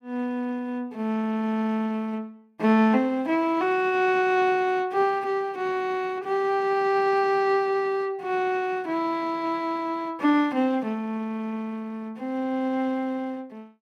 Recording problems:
none

